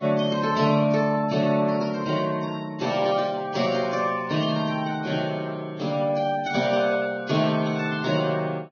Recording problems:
lossy compression; Vorbis, log-spectral distance 3 dB, nothing above 6.3 kHz

